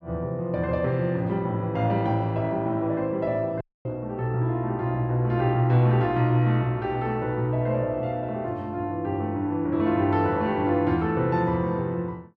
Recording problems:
audio cutting out; at 3.5 s

